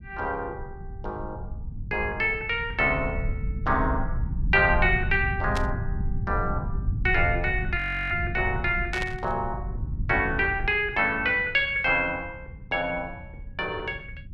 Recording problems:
rumble; below 110 Hz, SNR 7 dB
burst of static; at 5.5 s and at 9 s; peak -4 dB vs average level
frozen audio; at 8 s

